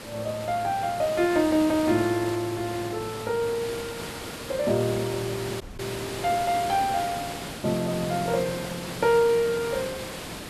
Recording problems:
hiss; slope -4 dB per octave, SNR 9 dB
audio cutting out; at 5.5 s

